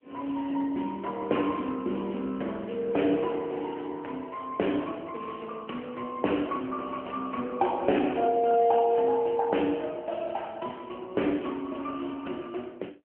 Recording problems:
telephone audio; 220 Hz to 3.1 kHz, AMR-NB

